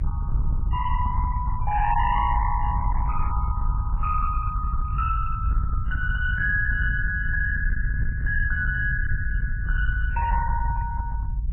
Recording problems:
lossy codec; MP3, log-spectral distance 2 dB, nothing above 3 kHz
distortion; hard clipping, uneven, signal-to-distortion ratio 10 dB
low-frequency rumble; below 80 Hz, SNR 0 dB

